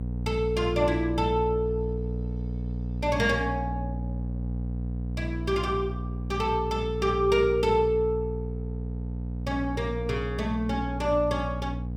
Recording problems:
hum; 60 Hz, harmonics up to 540 Hz, SNR 5 dB

